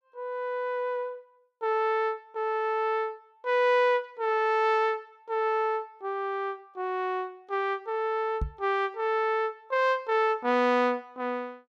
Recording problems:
microphone thump; at 8.5 s; peak 0 dB vs average level

